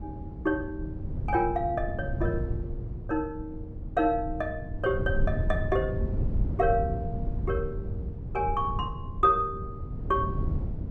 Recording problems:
wind on the microphone; below 120 Hz, SNR 4 dB

